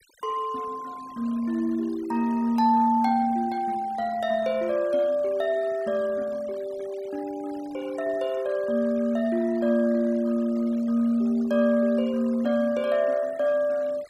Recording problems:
denoising artefacts; signal-to-artefact ratio 23 dB

